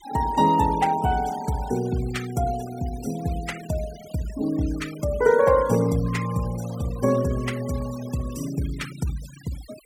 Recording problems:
noise reduction artefacts; signal-to-artefact ratio 18 dB

